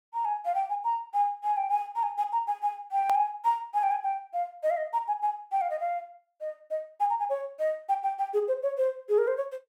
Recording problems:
hard cut with a click; at 3 s

